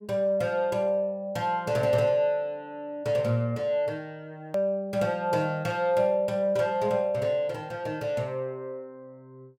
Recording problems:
edit click; at 4.5 s

